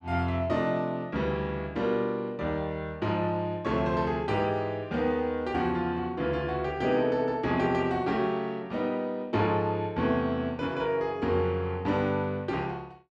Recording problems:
none

